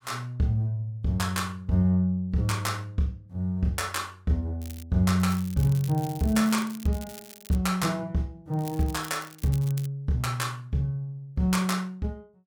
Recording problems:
crackling; at 4.5 s, from 5 to 7.5 s and from 8.5 to 10 s; loose cable, SNR 18 dB

